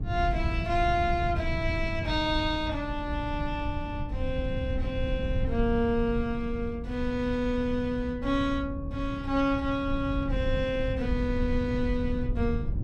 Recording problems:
low-frequency rumble; below 110 Hz, SNR 4 dB

